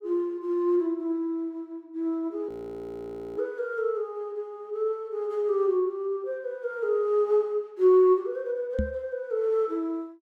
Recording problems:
frozen audio; at 2.5 s for 1 s
microphone bump; at 9 s; peak +2 dB vs average level

